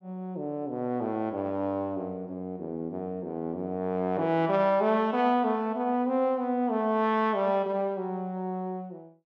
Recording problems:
none

